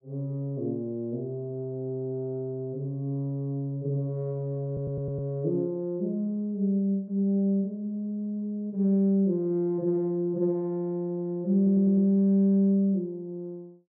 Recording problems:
stutter; at 4.5 s and at 12 s

